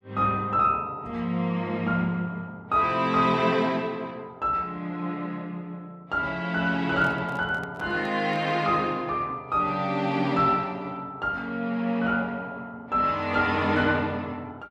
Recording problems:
handling noise; from 7 to 8.5 s; peak -10 dB vs average level

